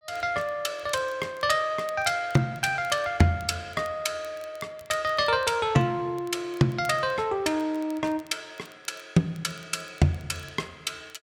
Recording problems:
crackling; vinyl, SNR 27 dB

